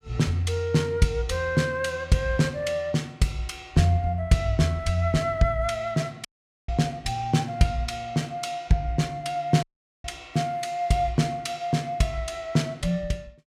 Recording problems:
dropout; at 6.5 s and at 9.5 s

